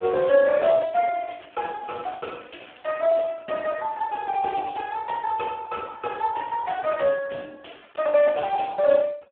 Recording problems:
telephone audio; 190 Hz to 3.3 kHz, Speex
packet loss; 12% of the sound replaced, filled with the last packet
crackling; from 1 to 3 s; loose cable, SNR 29 dB

